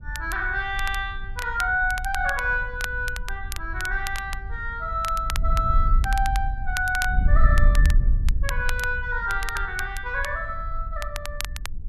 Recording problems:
wind on the microphone; below 56 Hz, SNR 2 dB
crackling; vinyl, SNR 11 dB

